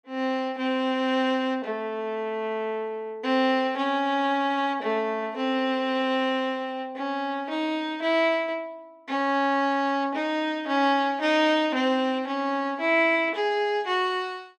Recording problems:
none

